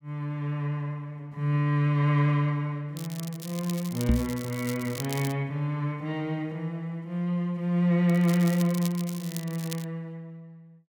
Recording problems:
crackling; from 3 to 5.5 s and from 8 to 10 s; loose cable, SNR 13 dB
knock on the microphone; at 4 s; peak +9 dB vs average level

